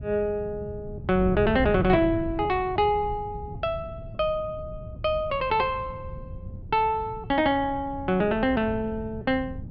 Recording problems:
wind noise; below 150 Hz, SNR 11 dB

